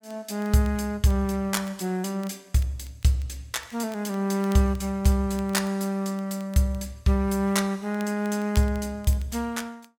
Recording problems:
crackle; vinyl, SNR 26 dB

